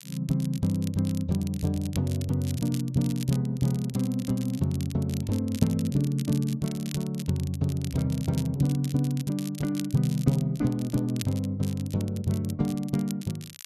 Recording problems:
crackling; vinyl, SNR 16 dB

